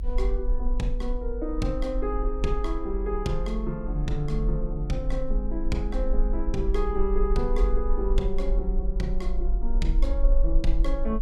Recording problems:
hum; 60 Hz, harmonics up to 480 Hz, SNR 22 dB
low-frequency rumble; below 44 Hz, SNR -2 dB

